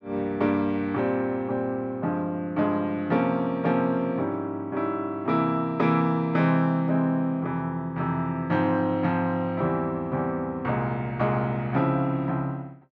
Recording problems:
none

